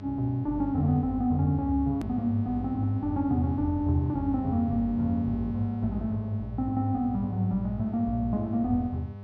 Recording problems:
hum; 50 Hz, harmonics up to 1.3 kHz, SNR 12 dB
edit click; at 2 s

